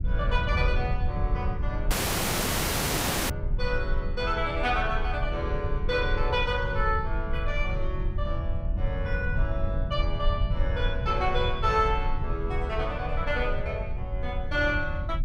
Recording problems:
low-frequency rumble; below 80 Hz, SNR 1 dB
audio cutting out; at 2 s for 1.5 s

